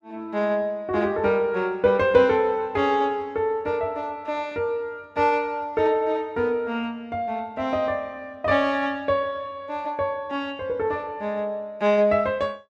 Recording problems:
none

